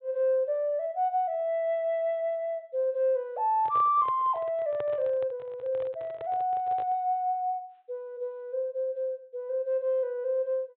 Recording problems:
treble cut off; nothing above 4 kHz
microphone handling noise; from 3.5 to 7 s; peak -7 dB vs average level

